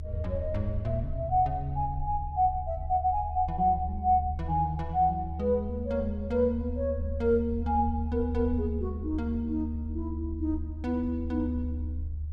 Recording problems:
rumble; below 78 Hz, strongest tone 76 Hz, SNR 6 dB

